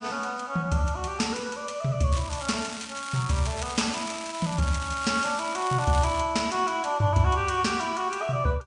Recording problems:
lossy compression; MP3, log-spectral distance 5 dB, nothing above 9 kHz
crackling; from 2 to 6 s; loose cable, SNR 12 dB

